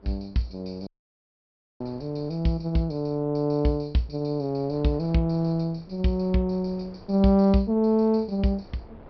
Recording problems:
low-pass filter; nothing above 5.5 kHz
wind on the microphone; below 550 Hz, SNR 25 dB
audio cutting out; at 1 s for 1 s

